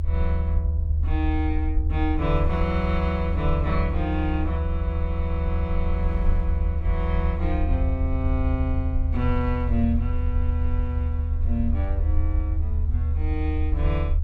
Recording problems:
rumble; below 78 Hz, SNR -4 dB
wind noise; below 280 Hz, SNR 19 dB

